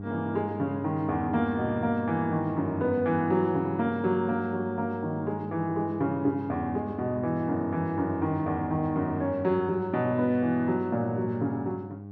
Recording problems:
hum; 50 Hz, harmonics up to 800 Hz, SNR 11 dB

